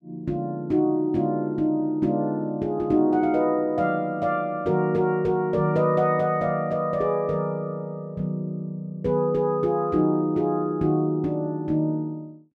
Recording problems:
none

